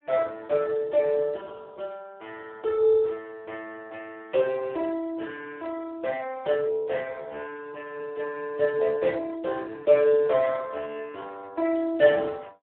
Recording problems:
phone line; 280 Hz to 2.3 kHz, Speex

